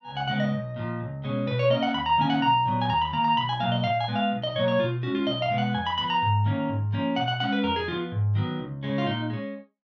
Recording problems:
none

